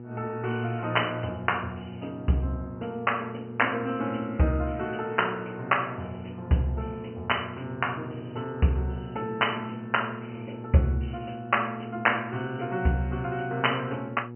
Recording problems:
treble missing; nothing above 3 kHz
hum; 60 Hz, harmonics up to 960 Hz, SNR 13 dB

